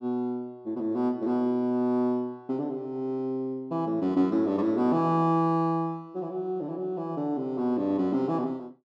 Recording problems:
none

